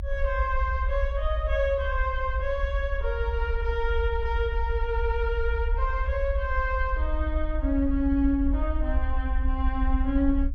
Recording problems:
rumble; below 66 Hz, SNR 1 dB

